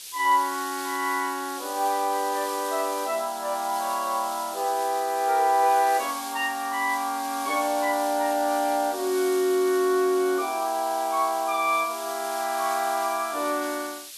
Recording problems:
background hiss; SNR 12 dB

